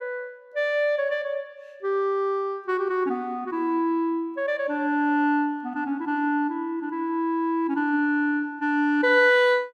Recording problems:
none

